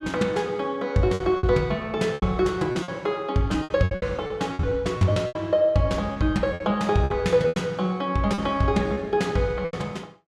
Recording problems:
lost packets; 12% of the sound replaced, filled with repeated pitch periods

